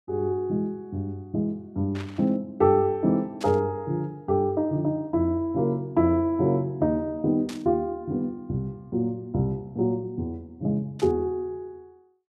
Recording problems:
burst of static; 4 times, first at 2 s; peak -9 dB vs average level

